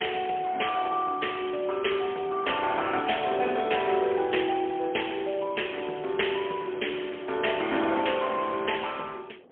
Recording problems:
phone line; 280 Hz to 3.3 kHz, AMR-NB, then MP3
wind noise; below 600 Hz, SNR 20 dB

